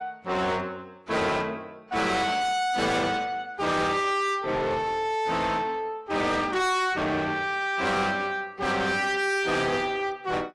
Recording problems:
codec artefacts; AAC, log-spectral distance 3 dB, nothing above 11 kHz
distortion; soft clipping, signal-to-distortion ratio 6 dB

